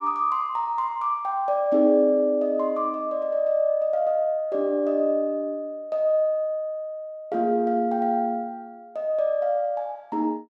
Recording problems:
none

